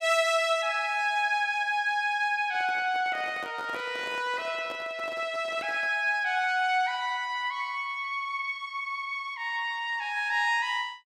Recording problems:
microphone handling noise; from 2.5 to 6 s; peak -8 dB vs average level

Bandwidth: 16 kHz